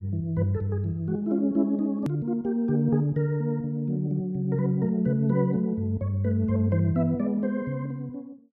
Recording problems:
hard cut with a click; at 2 s

